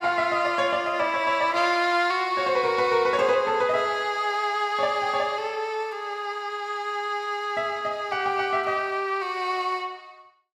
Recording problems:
none

